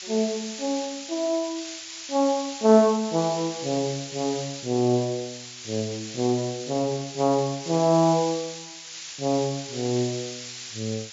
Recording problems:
low-pass filter; nothing above 7.3 kHz
hiss; slope +6 dB per octave, SNR 11 dB

